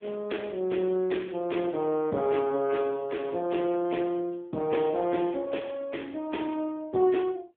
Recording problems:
phone line; 150 Hz to 3.6 kHz, AMR-NB

